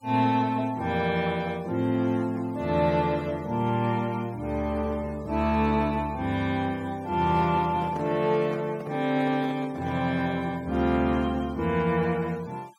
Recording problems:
noise reduction artefacts; signal-to-artefact ratio 26 dB
handling noise; from 7 to 10 s; peak -9 dB vs average level

